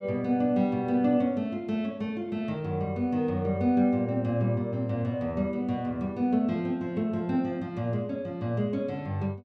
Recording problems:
none

